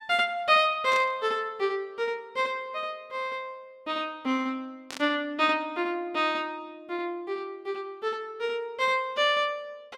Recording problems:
static burst; at 1 s and at 5 s; peak -6 dB vs average level

